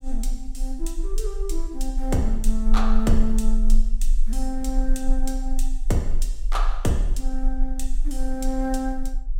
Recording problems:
rumble; below 32 Hz, strongest tone 20 Hz, SNR -1 dB

